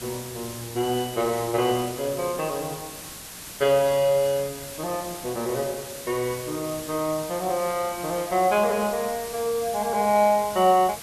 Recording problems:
hiss; slope -1 dB per octave, SNR 12 dB

